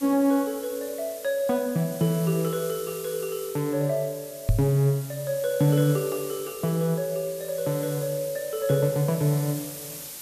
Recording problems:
hiss; slope 0 dB per octave, SNR 13 dB
microphone bump; at 4.5 s; peak +7 dB vs average level

